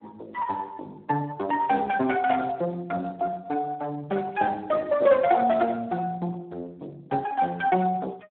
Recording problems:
telephone audio; 190 Hz to 2.8 kHz, Speex

